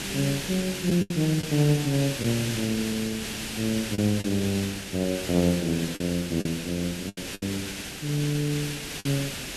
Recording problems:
background hiss; SNR 6 dB
packet loss; 5% of the sound replaced, filled with the last packet

